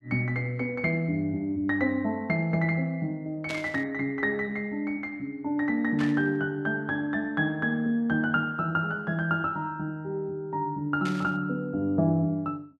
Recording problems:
burst of static; at 3.5 s, at 6 s and at 11 s; peak -4 dB vs average level

